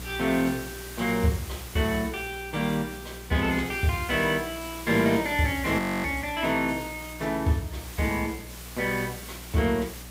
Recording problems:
electrical hum; 60 Hz, harmonics up to 540 Hz, SNR 18 dB
hiss; slope -1 dB per octave, SNR 14 dB
audio freezing; at 6 s

